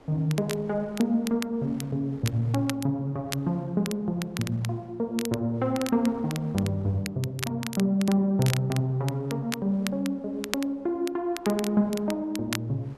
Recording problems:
wind noise; below 970 Hz, SNR 27 dB
crackling; vinyl, SNR 12 dB

